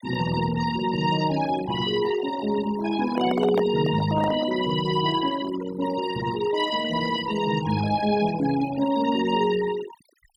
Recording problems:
denoising artefacts; signal-to-artefact ratio 12 dB
microphone handling noise; from 3 to 4.5 s; peak +1 dB vs average level

